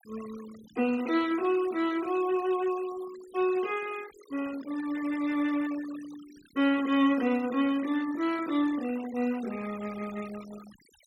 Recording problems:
noise reduction artefacts; signal-to-artefact ratio 18 dB

